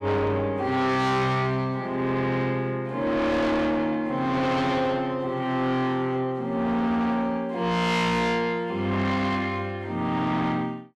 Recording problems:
distorted audio; soft clipping, signal-to-distortion ratio 7 dB

